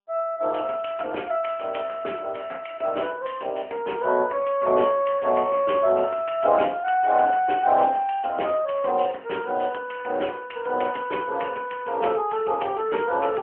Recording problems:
telephone audio; 260 Hz to 3.1 kHz, AMR-NB

